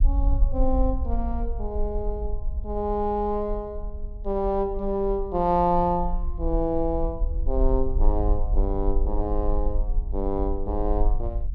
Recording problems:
low-frequency rumble; below 48 Hz, SNR 2 dB

